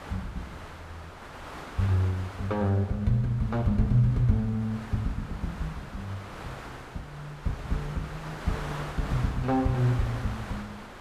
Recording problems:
wind noise; below 1.8 kHz, SNR 13 dB

